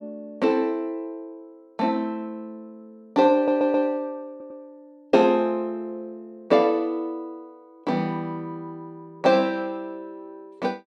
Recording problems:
stutter; at 3.5 s and at 4.5 s

